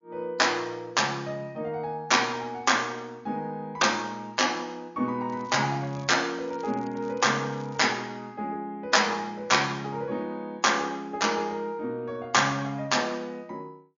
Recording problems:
low-pass filter; nothing above 7.1 kHz
lossy codec; MP3, log-spectral distance 3 dB
crackling; from 5.5 to 8 s; loose cable, SNR 28 dB

